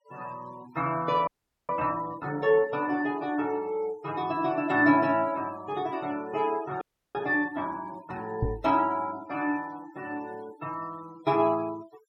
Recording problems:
denoising artefacts; signal-to-artefact ratio 22 dB
frozen audio; at 1.5 s and at 7 s
knock on the microphone; at 8.5 s; peak +4 dB vs average level

